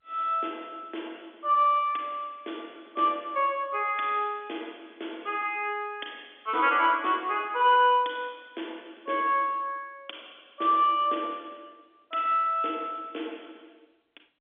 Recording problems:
telephone audio; 260 Hz to 3.6 kHz, G.711

